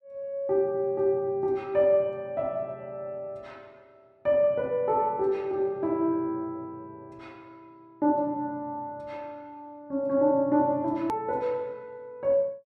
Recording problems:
hard cut with a click; at 11 s

